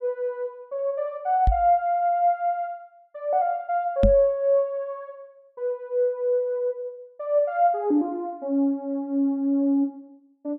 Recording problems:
microphone thump; at 1.5 s and at 4 s; peak +6 dB vs average level

